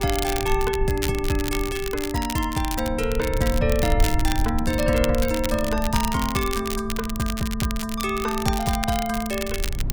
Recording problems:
rumble; below 76 Hz, SNR 6 dB
crackle; vinyl, SNR 8 dB

